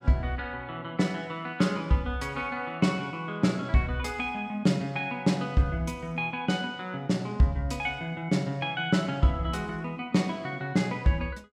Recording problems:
none

